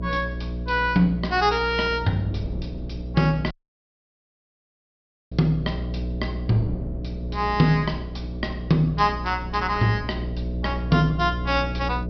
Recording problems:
treble cut off; nothing above 5.5 kHz
hum; 60 Hz, harmonics up to 660 Hz, SNR 8 dB
wind on the microphone; below 250 Hz, SNR 17 dB
audio cutting out; at 3.5 s for 2 s

